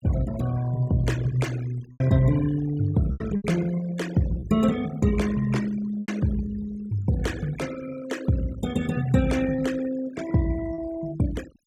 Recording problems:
denoising artefacts; signal-to-artefact ratio 16 dB
lost packets; 3% of the sound replaced, filled with repeated pitch periods

